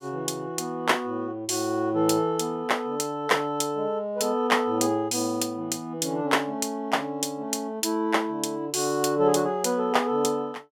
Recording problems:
none

